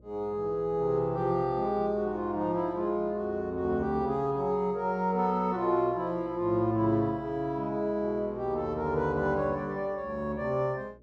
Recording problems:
electrical hum; 60 Hz, harmonics up to 600 Hz, SNR 23 dB

